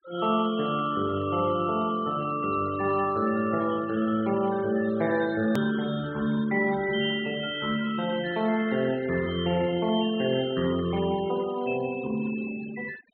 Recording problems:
treble cut off; nothing above 4.2 kHz
denoising artefacts; signal-to-artefact ratio 17 dB
hard cut with a click; at 5.5 s

